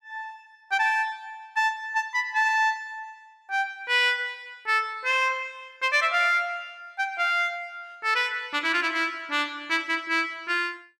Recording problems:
none

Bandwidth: 14.5 kHz